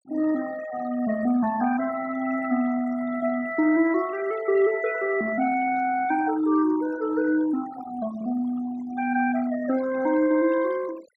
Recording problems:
noise reduction artefacts; signal-to-artefact ratio 17 dB

